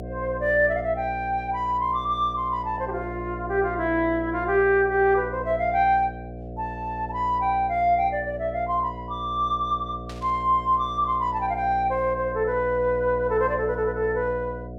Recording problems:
hum; 60 Hz, harmonics up to 720 Hz, SNR 12 dB
static burst; at 10 s; peak -14 dB vs average level

